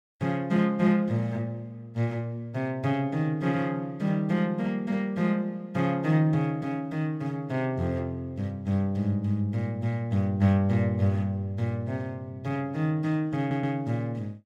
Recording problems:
audio stuttering; at 13 s

